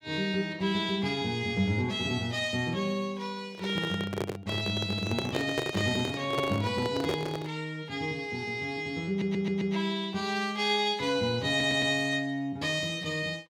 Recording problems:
microphone handling noise; from 3.5 to 7.5 s; peak +3 dB vs average level
audio stuttering; at 9 s and at 11 s

